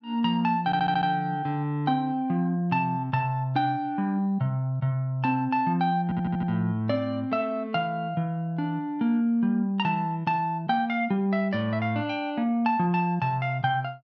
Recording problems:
stutter; at 0.5 s and at 6 s

